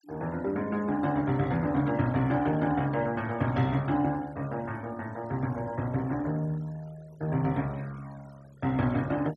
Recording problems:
denoising artefacts; signal-to-artefact ratio 22 dB

